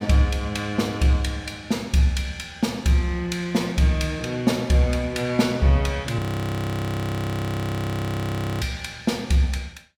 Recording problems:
frozen audio; at 6 s for 2.5 s

